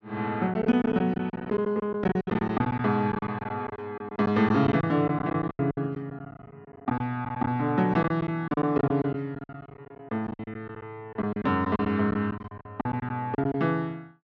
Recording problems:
lost packets; 15% of the sound replaced, filled with silence

